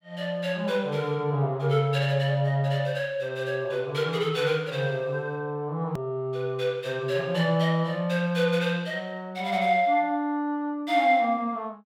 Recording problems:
click at an edit; at 6 s

